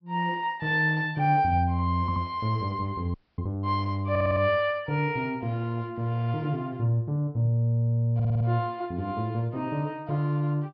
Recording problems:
treble cut off; nothing above 5.5 kHz
stutter; at 2 s, at 4 s and at 8 s
frozen audio; at 3 s

